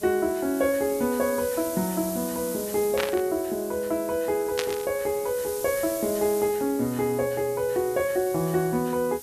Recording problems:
hiss; SNR 11 dB
burst of static; at 3 s and at 4.5 s; peak +2 dB vs average level

